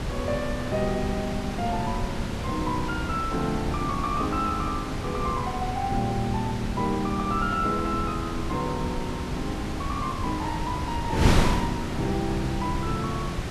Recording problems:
wind noise; below 520 Hz, SNR 2 dB

